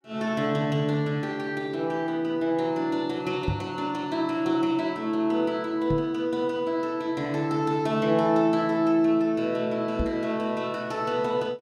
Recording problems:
microphone bump; at 3.5 s, at 6 s and at 10 s; peak +2 dB vs average level

